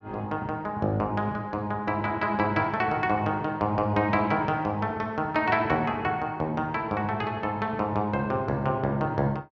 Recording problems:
none

